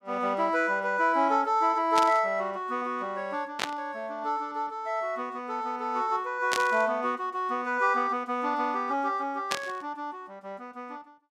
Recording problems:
static burst; 4 times, first at 2 s; peak +3 dB vs average level

